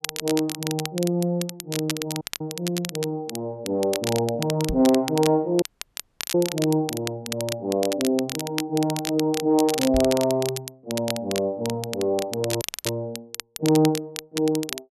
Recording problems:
crackling; vinyl, SNR 8 dB
audio cutting out; at 2 s, at 5.5 s for 0.5 s and at 13 s
microphone thump; at 4.5 s and at 10 s; peak -1 dB vs average level

